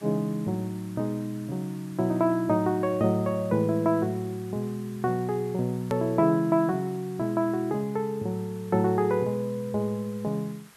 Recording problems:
hiss; SNR 24 dB
click at an edit; at 6 s

